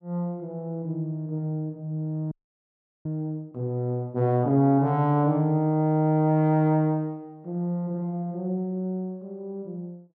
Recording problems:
frozen audio; at 2.5 s for 0.5 s

